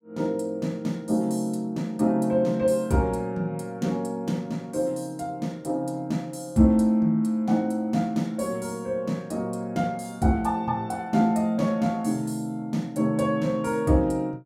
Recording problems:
none

